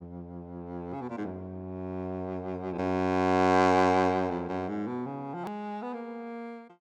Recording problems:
edit click; at 5.5 s

